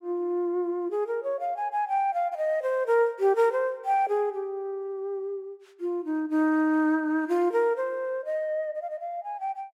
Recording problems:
none

